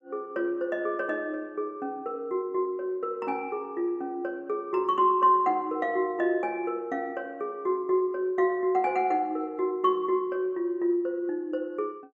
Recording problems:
none

